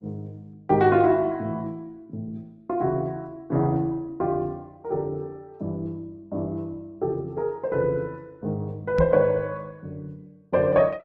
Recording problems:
lossy compression; Opus, log-spectral distance 2 dB
microphone bump; at 9 s; peak +4 dB vs average level

